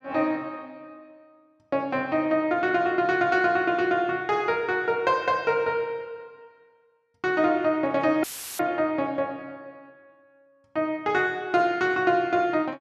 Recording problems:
audio cutting out; at 8 s; filled with static

